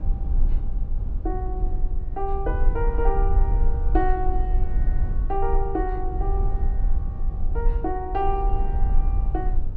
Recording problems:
rumble; below 48 Hz, strongest tone 22 Hz, SNR -3 dB

